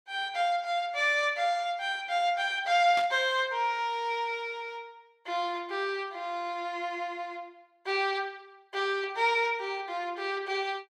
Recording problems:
burst of static; at 3 s; peak -5 dB vs average level

